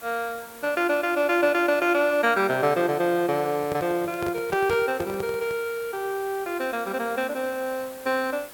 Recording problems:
background hiss; slope -3 dB per octave, SNR 18 dB
handling noise; from 3.5 to 5.5 s; peak -2 dB vs average level

